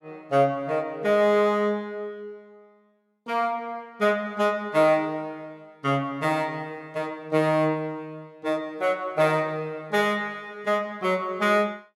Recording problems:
none

